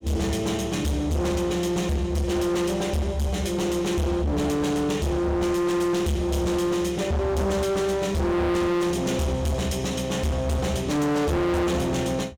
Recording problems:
distortion; hard clipping, signal-to-distortion ratio 6 dB

